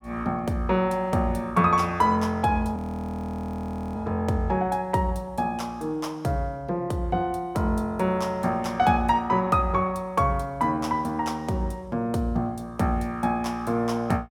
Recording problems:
audio freezing; at 3 s for 1 s

